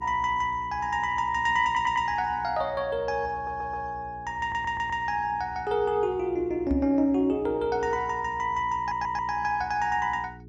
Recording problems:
hum; 60 Hz, harmonics up to 420 Hz, SNR 20 dB
audio stuttering; 4 times, first at 1.5 s
microphone thump; at 6.5 s; peak +1 dB vs average level

